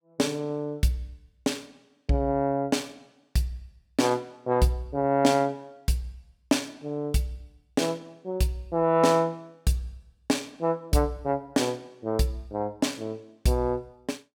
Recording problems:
none

